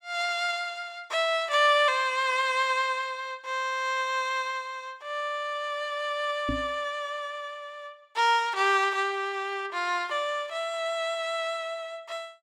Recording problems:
knock on the microphone; at 6.5 s; peak 0 dB vs average level

